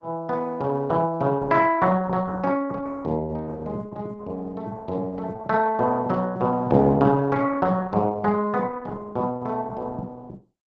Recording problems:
lossy codec; Opus, log-spectral distance 3 dB

